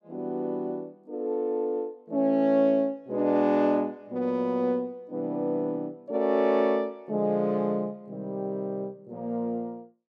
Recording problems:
none

